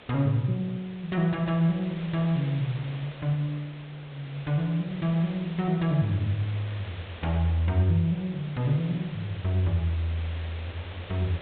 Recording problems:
treble missing; nothing above 4 kHz
hiss; SNR 16 dB

